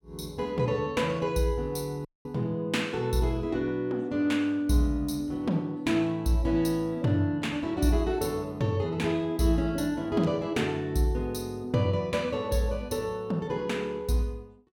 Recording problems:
audio cutting out; at 2 s

